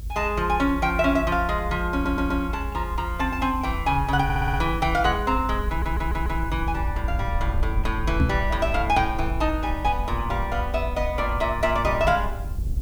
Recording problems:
hiss; slope +2 dB per octave, SNR 26 dB
low-frequency rumble; below 76 Hz, SNR 5 dB
audio stuttering; at 2 s, at 4 s and at 5.5 s
knock on the microphone; at 8 s; peak +7 dB vs average level

